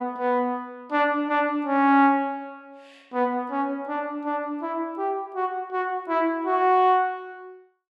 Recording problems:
none

